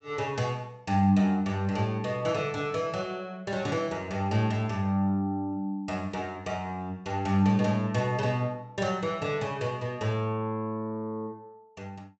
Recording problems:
treble cut off; nothing above 8 kHz

